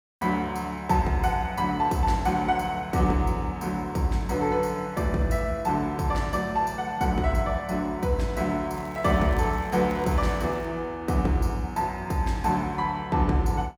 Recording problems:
crackling; from 8.5 to 11 s; loose cable, SNR 27 dB

